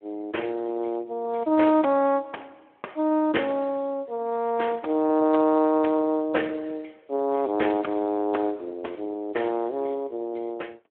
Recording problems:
phone line; 240 Hz to 3.5 kHz, Speex

